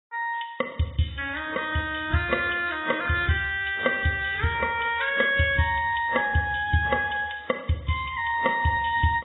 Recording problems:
codec artefacts; AAC, then AAC, log-spectral distance 7 dB, nothing above 3.8 kHz

